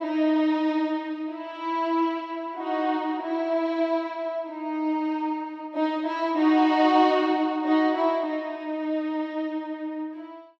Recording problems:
none

